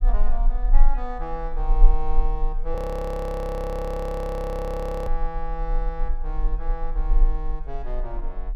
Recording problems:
rumble; below 34 Hz, strongest tone 18 Hz, SNR -4 dB
audio freezing; at 3 s for 2.5 s

